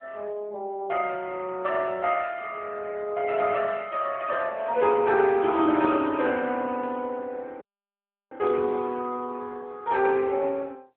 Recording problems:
telephone audio; 240 Hz to 3.4 kHz, AMR-NB
audio cutting out; at 7.5 s for 0.5 s

